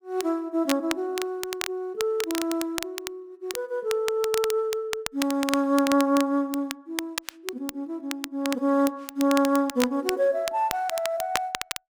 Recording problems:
crackle; vinyl, SNR 8 dB

